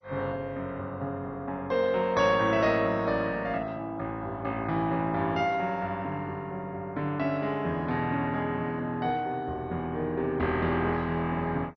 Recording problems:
lossy compression; MP2, log-spectral distance 2 dB, nothing above 5.2 kHz

